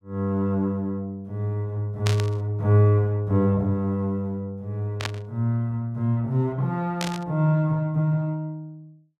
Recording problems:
static burst; at 2 s, at 5 s and at 7 s; peak 0 dB vs average level

